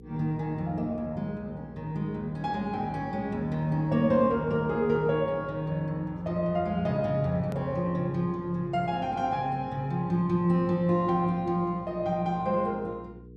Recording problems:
mains hum; 60 Hz, harmonics up to 480 Hz, SNR 20 dB
hard cut with a click; at 7.5 s

